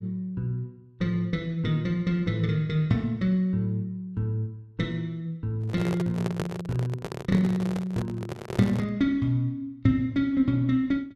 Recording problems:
microphone handling noise; from 5.5 to 9 s; peak +1 dB vs average level

